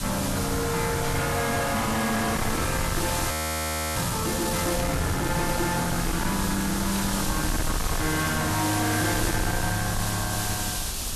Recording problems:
distortion; soft clipping, signal-to-distortion ratio 7 dB
background hiss; SNR 4 dB
rumble; below 210 Hz, SNR 7 dB
burst of static; 4 times, first at 1 s; peak -7 dB vs average level
audio freezing; at 3.5 s for 0.5 s

